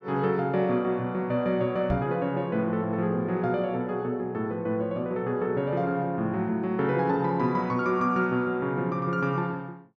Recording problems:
knock on the microphone; at 2 s; peak +2 dB vs average level

